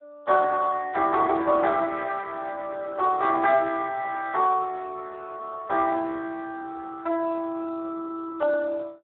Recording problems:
phone line; 340 Hz to 2.6 kHz, Speex

